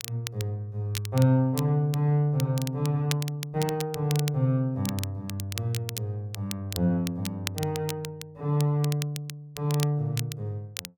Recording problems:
crackling; vinyl, SNR 11 dB

